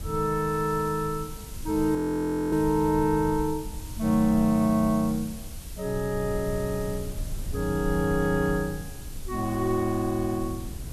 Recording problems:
background hiss; slope 0 dB per octave, SNR 18 dB
wind noise; below 100 Hz, SNR 13 dB
frozen audio; at 2 s for 0.5 s

